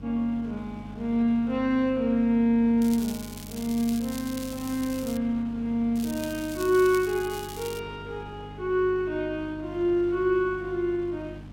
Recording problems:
hum; 50 Hz, harmonics up to 300 Hz, SNR 17 dB
wind on the microphone; below 1.2 kHz, SNR 25 dB
crackling; from 3 to 5 s and from 6 to 8 s; loose cable, SNR 15 dB

